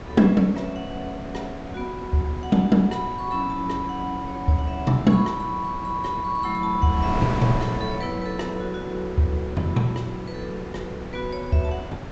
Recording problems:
treble missing; nothing above 8 kHz
wind noise; below 660 Hz, SNR 10 dB

